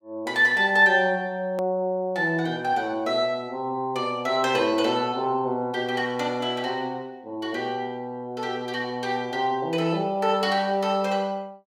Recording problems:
hard cut with a click; at 1.5 s

